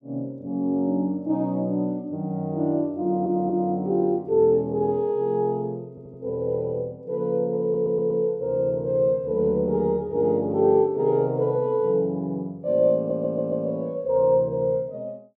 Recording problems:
stutter; 4 times, first at 3 s

